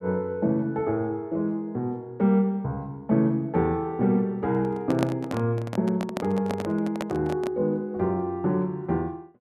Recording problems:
microphone handling noise; from 4.5 to 7.5 s; peak +2 dB vs average level

